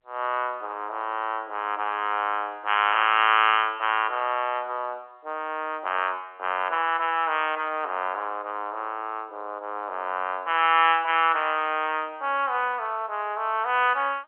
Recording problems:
telephone audio; 280 Hz to 3.2 kHz, G.711

